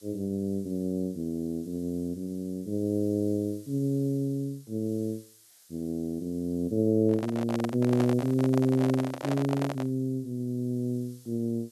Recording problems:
background hiss; SNR 26 dB
handling noise; from 7 to 10 s; peak 0 dB vs average level

